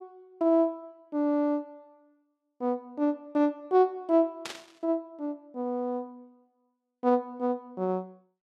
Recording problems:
static burst; at 4.5 s; peak -4 dB vs average level

